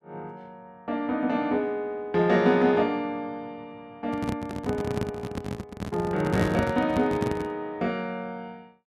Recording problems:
handling noise; from 4 to 7.5 s; peak +3 dB vs average level

